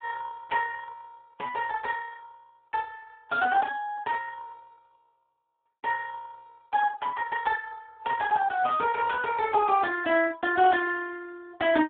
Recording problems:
telephone audio; 260 Hz to 3.5 kHz, Speex

